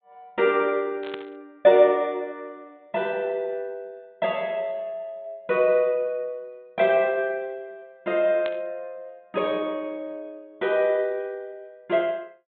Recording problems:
treble missing; nothing above 4 kHz
burst of static; at 1 s and at 8.5 s; peak -7 dB vs average level

